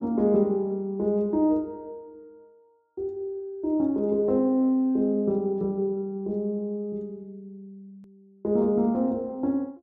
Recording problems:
edit click; at 8 s

